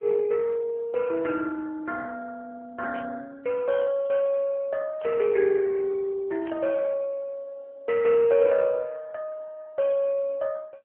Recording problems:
phone line; 340 Hz to 2.6 kHz, AMR-NB
static burst; at 3 s, at 5 s and at 6.5 s; peak -12 dB vs average level

